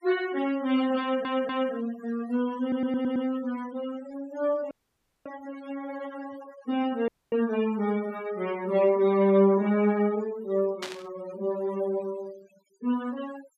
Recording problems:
noise reduction artefacts; signal-to-artefact ratio 19 dB
stutter; at 1 s and at 2.5 s
audio cutting out; at 4.5 s for 0.5 s and at 7 s
static burst; at 11 s; peak -3 dB vs average level

